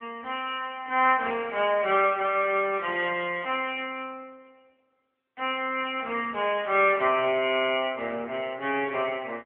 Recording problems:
telephone audio; 300 Hz to 3.1 kHz, AMR-NB

